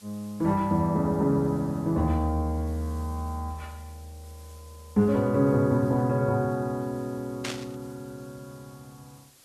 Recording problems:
background hiss; SNR 27 dB
burst of static; at 7.5 s; peak -3 dB vs average level

